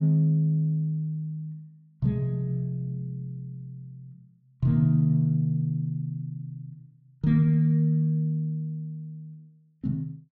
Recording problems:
none

